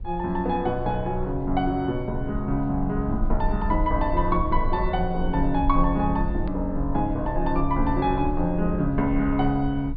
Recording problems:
treble missing; nothing above 4.9 kHz
low-frequency rumble; below 52 Hz, strongest tone 20 Hz, SNR 7 dB
edit click; at 6.5 s

